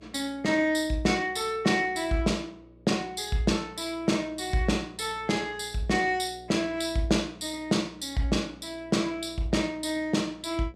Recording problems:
electrical hum; 60 Hz, harmonics up to 660 Hz, SNR 25 dB

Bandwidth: 14.5 kHz